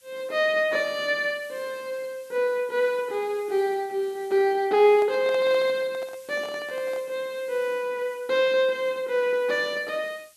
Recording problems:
hiss; SNR 27 dB
microphone handling noise; from 5 to 7 s; peak -10 dB vs average level

